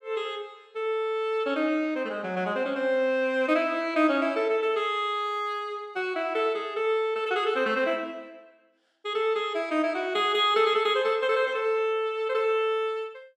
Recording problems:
none

